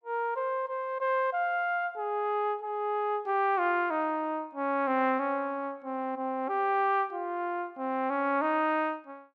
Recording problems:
none

